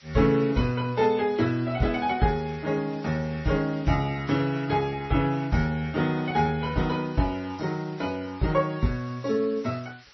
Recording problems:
lossy codec; MP3, then AAC, log-spectral distance 8 dB, nothing above 5.5 kHz
hiss; SNR 27 dB

